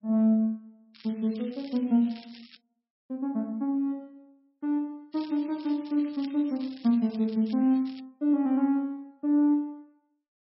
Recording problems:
lossy codec; MP3, log-spectral distance 3 dB
crackle; from 1 to 2.5 s and from 5 to 8 s; loose cable, SNR 22 dB

